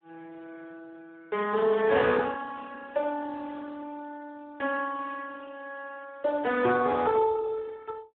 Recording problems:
telephone audio; 300 Hz to 2.8 kHz, Speex

